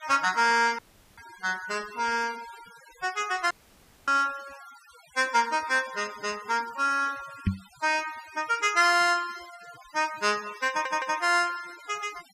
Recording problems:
noise reduction artefacts; signal-to-artefact ratio 19 dB
audio cutting out; at 1 s and at 3.5 s for 0.5 s
microphone bump; at 7.5 s; peak +4 dB vs average level
audio stuttering; at 11 s

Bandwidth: 15 kHz